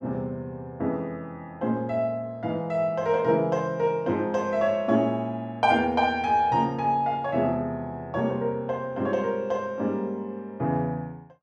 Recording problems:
none

